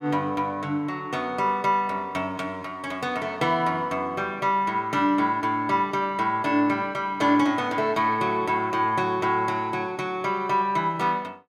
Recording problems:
none

